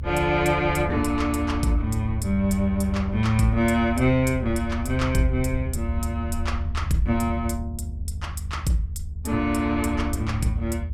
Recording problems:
hum; 50 Hz, harmonics up to 450 Hz, SNR 19 dB
rumble; below 78 Hz, strongest tone 78 Hz, SNR 6 dB

